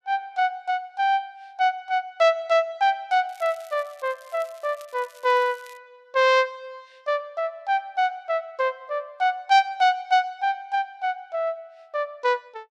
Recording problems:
crackle; from 3.5 to 6 s; loose cable, SNR 27 dB

